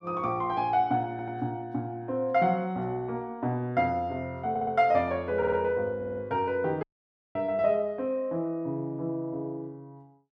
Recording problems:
stutter; 4 times, first at 1 s
dropout; at 7 s for 0.5 s

